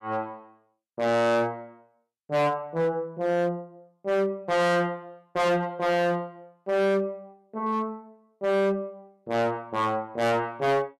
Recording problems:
distortion; hard clipping, signal-to-distortion ratio 6 dB

